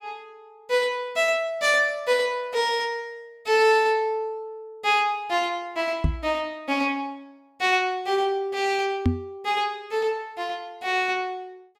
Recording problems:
microphone thump; at 6 s and at 9 s; peak +6 dB vs average level

